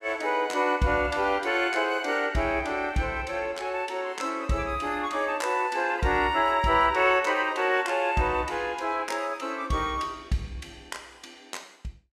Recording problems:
none

